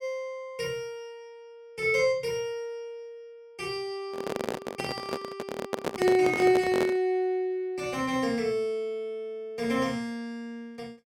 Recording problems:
microphone handling noise; from 4 to 7 s; peak +3 dB vs average level

